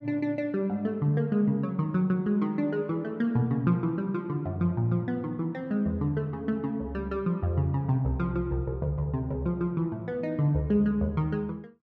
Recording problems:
none

